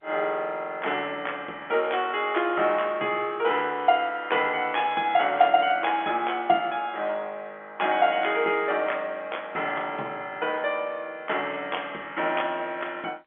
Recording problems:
telephone audio; 260 Hz to 3.4 kHz, G.711

